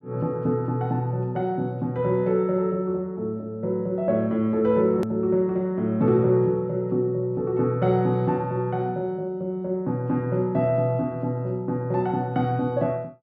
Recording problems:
hard cut with a click; at 5 s

